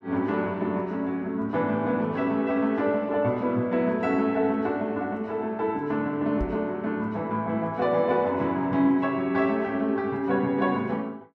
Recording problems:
microphone bump; at 6.5 s; peak -2 dB vs average level

